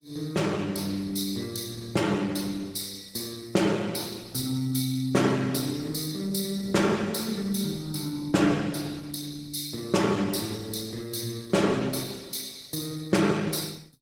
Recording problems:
lossy codec; Opus, log-spectral distance 6 dB, nothing above 16.5 kHz

